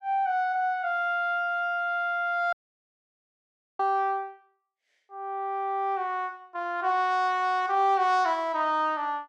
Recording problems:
audio cutting out; at 2.5 s for 1.5 s

